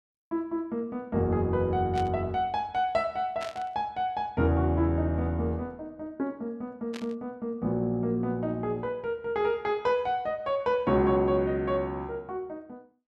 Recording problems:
burst of static; at 2 s, at 3.5 s and at 7 s; peak -8 dB vs average level

